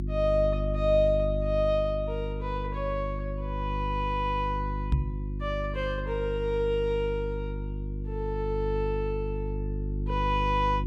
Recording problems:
mains hum; 50 Hz, harmonics up to 350 Hz, SNR 4 dB
microphone thump; at 5 s; peak +7 dB vs average level

